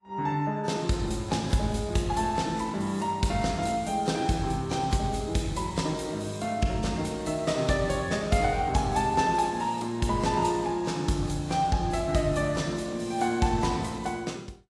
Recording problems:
lossy compression; AAC, log-spectral distance 3 dB

